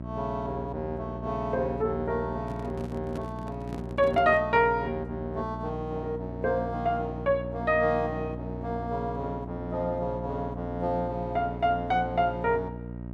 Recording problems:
hum; 60 Hz, harmonics up to 960 Hz, SNR 8 dB
handling noise; from 2.5 to 4.5 s; peak -4 dB vs average level

